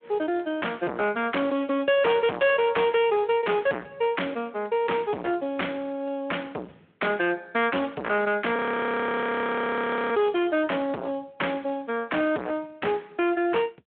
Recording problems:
telephone audio; 260 Hz to 3.4 kHz, Speex
distorted audio; hard clipping, signal-to-distortion ratio 5 dB
audio freezing; at 8.5 s for 1.5 s

